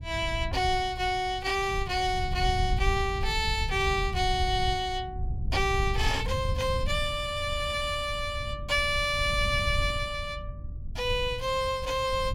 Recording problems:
wind noise; below 94 Hz, SNR 7 dB

